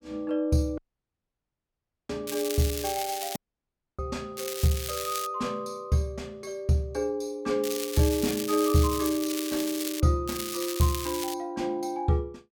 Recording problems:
dropout; at 1 s for 1.5 s and at 3.5 s for 0.5 s
crackle; 4 times, first at 2.5 s; loose cable, SNR 6 dB

